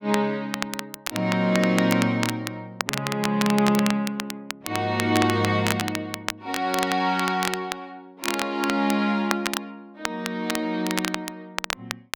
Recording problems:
crackle; vinyl, SNR 7 dB

